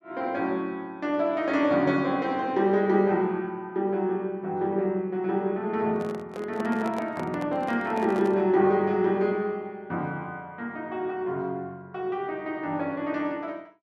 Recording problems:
microphone handling noise; from 6 to 8.5 s; peak -6 dB vs average level

